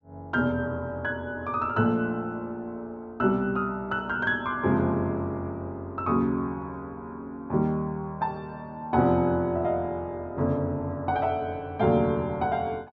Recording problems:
treble cut off; nothing above 8 kHz

